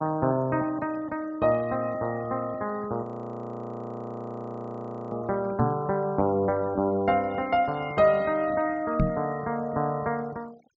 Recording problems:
treble cut off; nothing above 8 kHz
denoising artefacts; signal-to-artefact ratio 25 dB
frozen audio; at 3 s for 2 s
microphone bump; at 5.5 s and at 9 s; peak +6 dB vs average level

